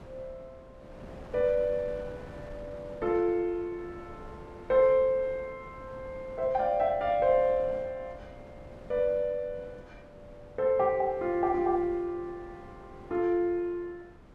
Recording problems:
wind noise; below 560 Hz, SNR 20 dB

